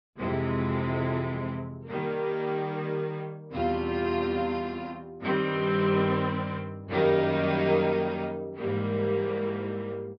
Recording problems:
treble cut off; nothing above 5.5 kHz

